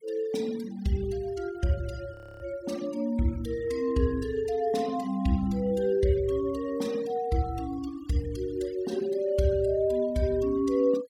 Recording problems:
noise reduction artefacts; signal-to-artefact ratio 19 dB
frozen audio; at 2 s

